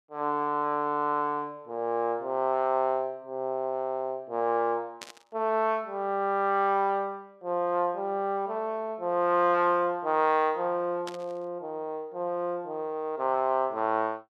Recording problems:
burst of static; at 5 s and at 11 s; peak -7 dB vs average level

